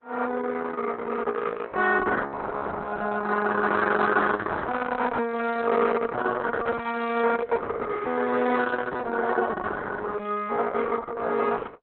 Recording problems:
lossy compression; Opus, log-spectral distance 5 dB, nothing above 4 kHz

